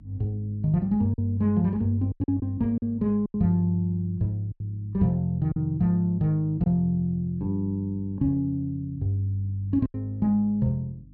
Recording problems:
hum; 50 Hz, harmonics up to 300 Hz, SNR 25 dB
packet loss; 5% of the sound replaced, filled with silence

